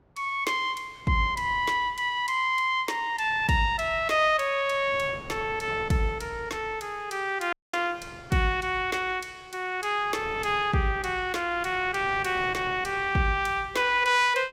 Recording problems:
wind on the microphone; below 660 Hz, SNR 21 dB
audio cutting out; at 7.5 s

